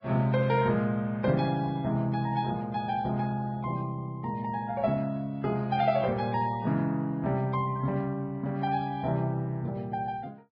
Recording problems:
codec artefacts; Vorbis, log-spectral distance 2 dB

